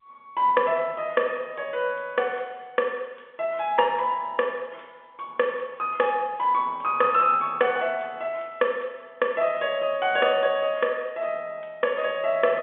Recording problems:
telephone audio; 220 Hz to 3.6 kHz, G.711

